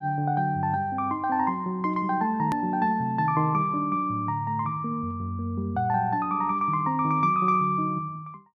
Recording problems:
hard cut with a click; at 2.5 s

